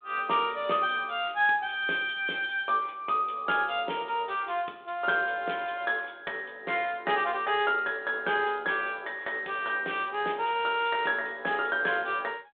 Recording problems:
phone line; 280 Hz to 3.6 kHz, G.726

